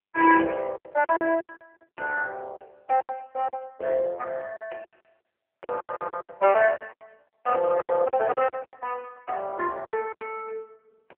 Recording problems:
phone line; 320 Hz to 3.1 kHz, AMR-NB
packet loss; 16% of the sound replaced, filled with silence

